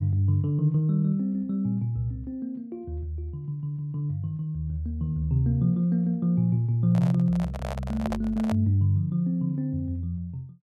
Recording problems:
handling noise; from 7 to 8.5 s; peak -3 dB vs average level

